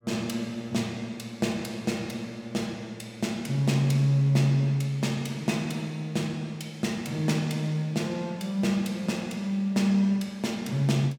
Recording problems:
none

